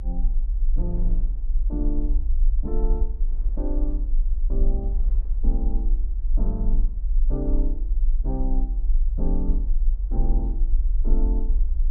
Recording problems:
low-frequency rumble; below 42 Hz, strongest tone 26 Hz, SNR -8 dB
wind on the microphone; below 380 Hz, SNR 21 dB

